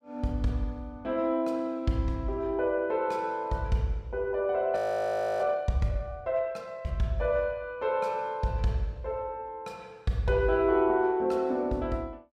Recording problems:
frozen audio; at 5 s for 0.5 s

